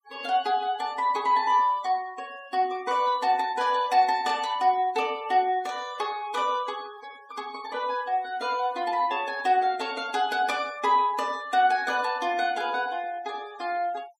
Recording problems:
noise reduction artefacts; signal-to-artefact ratio 22 dB

